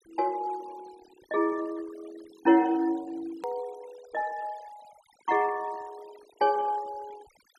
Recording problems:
noise reduction artefacts; signal-to-artefact ratio 22 dB
hard cut with a click; at 3.5 s

